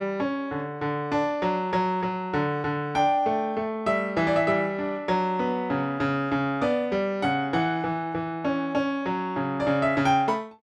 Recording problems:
none

